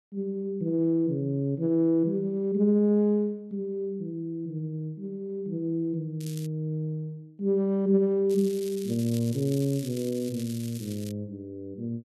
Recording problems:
crackle; at 6 s and from 8.5 to 11 s; loose cable, SNR 17 dB

